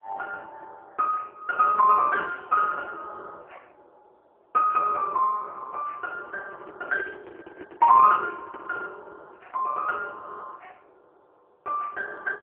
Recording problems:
telephone audio; 320 Hz to 2.1 kHz, AMR-NB
microphone handling noise; from 6.5 to 9 s; peak -12 dB vs average level

